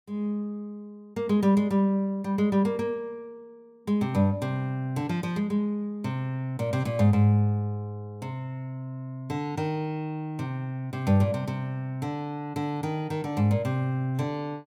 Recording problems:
none

